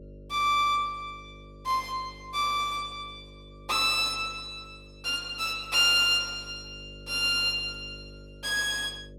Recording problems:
hum; 50 Hz, harmonics up to 600 Hz, SNR 23 dB

